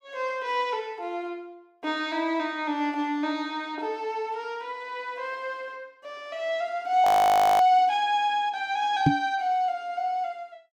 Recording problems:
frozen audio; at 7 s for 0.5 s
microphone thump; at 9 s; peak +8 dB vs average level

